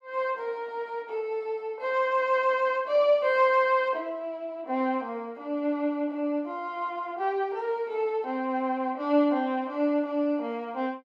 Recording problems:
none

